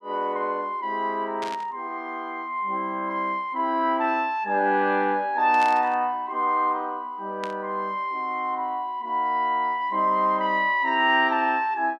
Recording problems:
static burst; at 1.5 s, at 5.5 s and at 7.5 s; peak -7 dB vs average level

